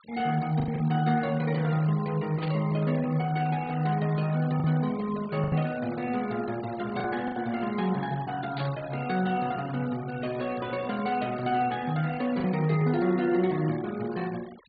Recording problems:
treble missing; nothing above 4.7 kHz
denoising artefacts; signal-to-artefact ratio 18 dB
packet loss; 3% of the sound replaced, filled with the last packet
burst of static; at 2.5 s and at 8.5 s; peak -8 dB vs average level

